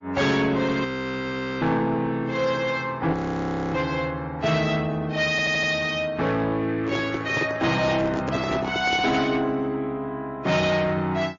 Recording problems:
lossy codec; MP3, then MP3, log-spectral distance 2 dB, nothing above 6.7 kHz
distorted audio; soft clipping, signal-to-distortion ratio 11 dB
frozen audio; at 1 s for 1 s and at 3 s for 0.5 s
stutter; at 5.5 s
handling noise; from 7 to 9.5 s; peak 0 dB vs average level

